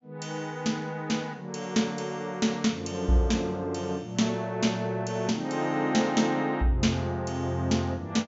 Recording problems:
treble missing; nothing above 8 kHz

